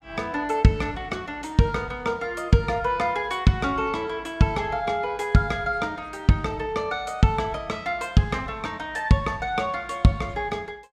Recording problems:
none

